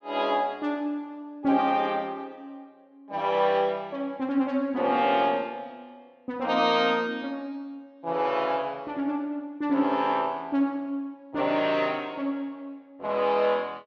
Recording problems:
none

